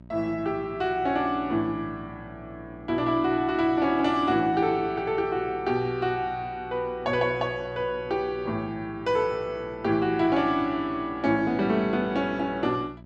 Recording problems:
hum; 60 Hz, harmonics up to 1 kHz, SNR 20 dB

